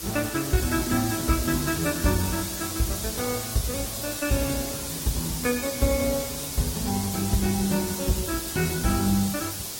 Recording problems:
codec artefacts; Opus, log-spectral distance 9 dB, nothing above 16 kHz
hiss; SNR 5 dB

